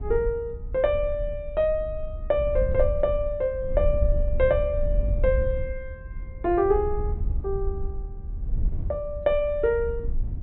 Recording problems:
low-pass filter; nothing above 4.2 kHz
wind on the microphone; below 66 Hz, SNR 5 dB

